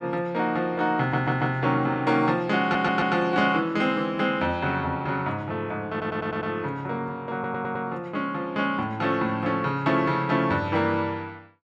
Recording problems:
audio stuttering; 4 times, first at 1 s

